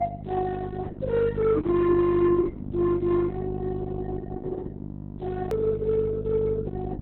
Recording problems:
codec artefacts; Opus, log-spectral distance 2 dB, nothing above 18.3 kHz
distorted audio; soft clipping, signal-to-distortion ratio 11 dB
hum; 50 Hz, harmonics up to 650 Hz, SNR 10 dB
edit click; at 5.5 s

